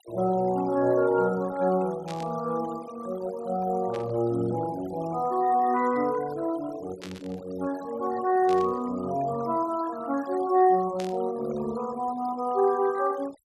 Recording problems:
noise reduction artefacts; signal-to-artefact ratio 19 dB
static burst; 5 times, first at 2 s; peak -9 dB vs average level

